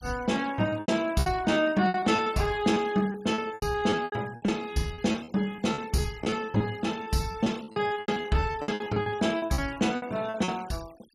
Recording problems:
denoising artefacts; signal-to-artefact ratio 22 dB
packet loss; 18% of the sound replaced, filled with repeated pitch periods

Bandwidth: 15.5 kHz